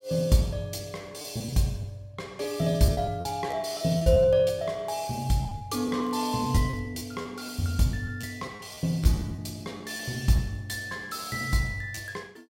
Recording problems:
packet loss; 8% of the sound replaced, filled with repeated pitch periods
crackle; at 6 s; loose cable, SNR 29 dB

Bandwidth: 16 kHz